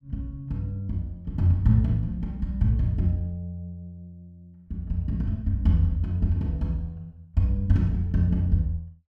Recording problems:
none

